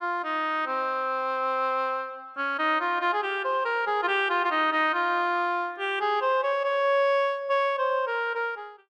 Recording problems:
none

